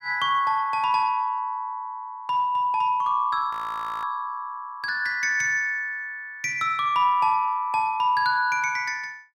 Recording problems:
frozen audio; at 3.5 s for 0.5 s

